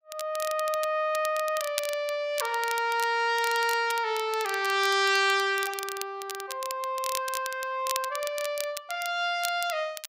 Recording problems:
crackling; vinyl, SNR 11 dB

